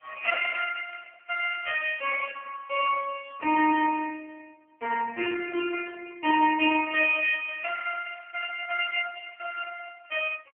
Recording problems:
phone line; 260 Hz to 3.1 kHz, AMR-NB

